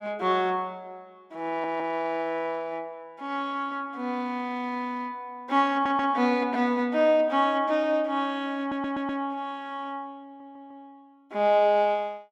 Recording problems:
stutter; 4 times, first at 1.5 s

